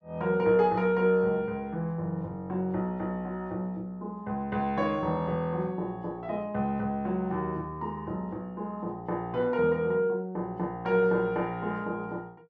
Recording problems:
none

